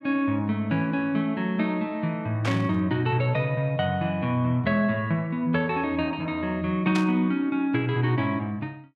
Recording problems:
burst of static; at 2.5 s and at 7 s; peak -2 dB vs average level

